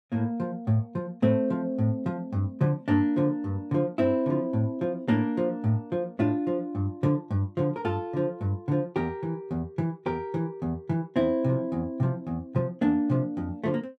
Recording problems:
none

